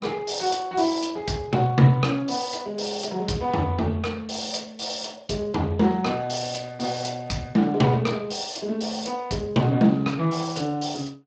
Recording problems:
lossy compression; Speex, log-spectral distance 6 dB

